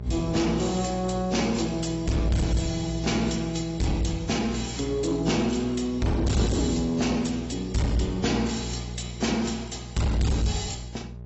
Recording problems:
codec artefacts; AAC, log-spectral distance 6 dB, nothing above 7.6 kHz
distorted audio; soft clipping, signal-to-distortion ratio 8 dB
electrical hum; 60 Hz, harmonics up to 480 Hz, SNR 11 dB

